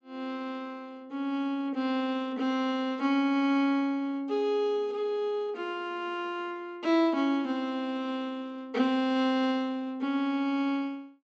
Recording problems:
treble cut off; nothing above 7.9 kHz

